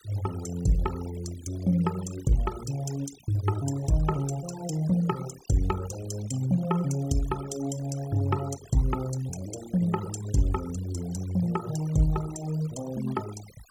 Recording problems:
denoising artefacts; signal-to-artefact ratio 16 dB

